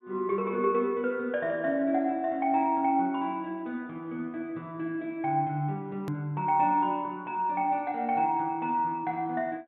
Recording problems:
treble missing; nothing above 4 kHz
click at an edit; at 6 s

